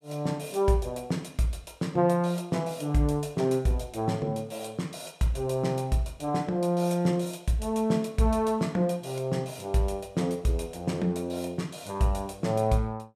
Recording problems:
none

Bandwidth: 14.5 kHz